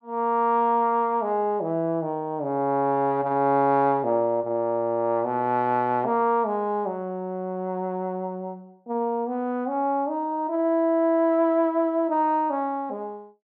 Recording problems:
none

